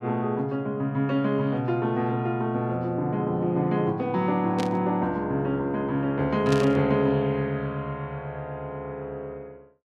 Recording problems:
static burst; at 4.5 s and at 6.5 s; peak -4 dB vs average level

